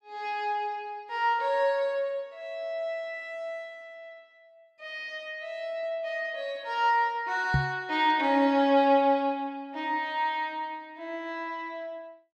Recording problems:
knock on the microphone; at 7.5 s; peak +5 dB vs average level

